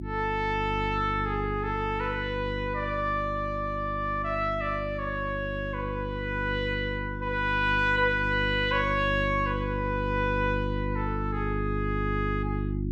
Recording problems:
hum; 50 Hz, harmonics up to 350 Hz, SNR 5 dB

